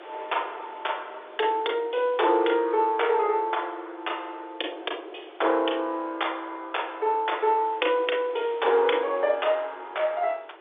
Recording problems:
telephone audio; 300 Hz to 3.6 kHz, G.711
wind on the microphone; below 1.7 kHz, SNR 22 dB

